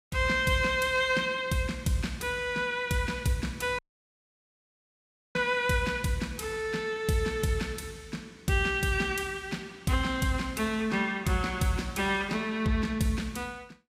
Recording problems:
dropout; at 4 s for 1.5 s

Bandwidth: 15.5 kHz